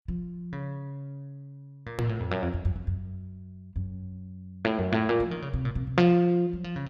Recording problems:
edit click; at 2 s

